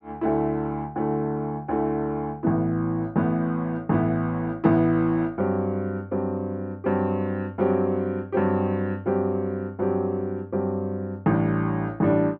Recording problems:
none

